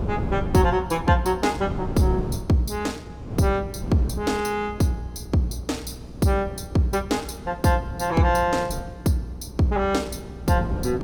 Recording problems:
hum; 60 Hz, harmonics up to 420 Hz, SNR 20 dB
wind on the microphone; below 270 Hz, SNR 11 dB

